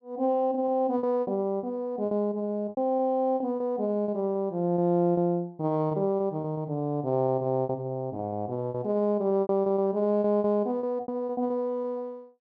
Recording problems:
packet loss; 12% of the sound replaced, filled with repeated pitch periods

